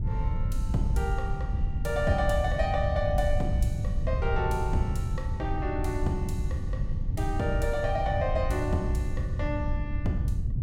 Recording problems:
wind on the microphone; below 100 Hz, SNR 0 dB

